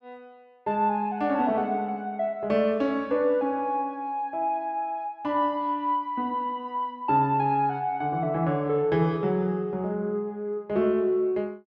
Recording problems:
none

